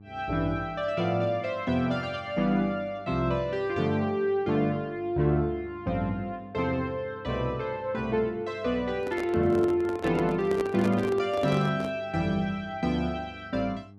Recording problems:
hum; 50 Hz, harmonics up to 800 Hz, SNR 22 dB
handling noise; from 9 to 12 s; peak -1 dB vs average level

